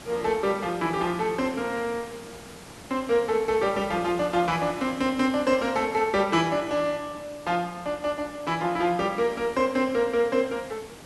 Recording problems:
hiss; slope -4 dB per octave, SNR 18 dB

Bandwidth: 12 kHz